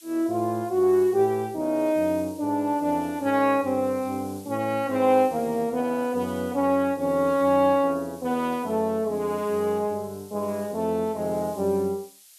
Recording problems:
hiss; slope +5 dB per octave, SNR 23 dB

